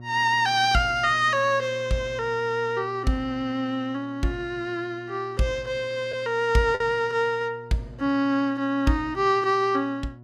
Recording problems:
electrical hum; 60 Hz, harmonics up to 720 Hz, SNR 19 dB
packet loss; 0.6% of the sound replaced, filled with the last packet

